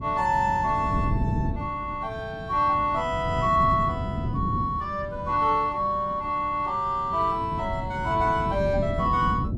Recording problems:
wind on the microphone; below 210 Hz, SNR 7 dB

